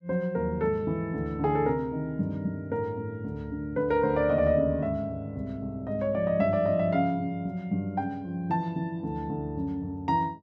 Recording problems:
none

